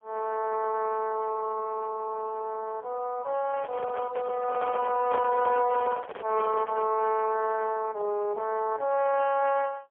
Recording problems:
phone line; 300 Hz to 2.5 kHz, AMR-NB, then MP3
microphone handling noise; from 3.5 to 7 s; peak -1 dB vs average level

